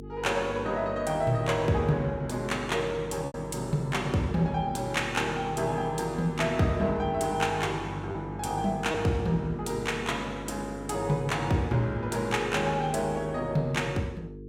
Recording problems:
electrical hum; 50 Hz, harmonics up to 450 Hz, SNR 13 dB
lost packets; 0.8% of the sound replaced, filled with repeated pitch periods

